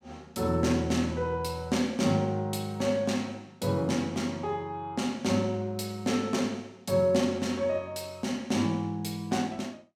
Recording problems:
none

